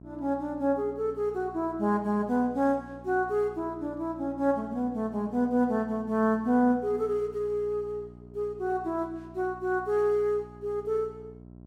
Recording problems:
electrical hum; 60 Hz, harmonics up to 1 kHz, SNR 20 dB

